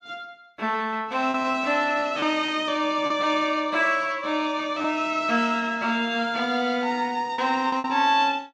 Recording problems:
packet loss; 4% of the sound replaced, filled with repeated pitch periods

